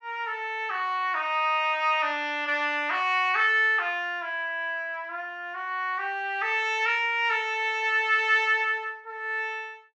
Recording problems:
none

